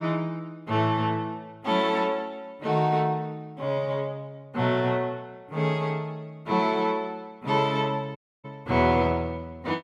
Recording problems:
audio cutting out; at 8 s

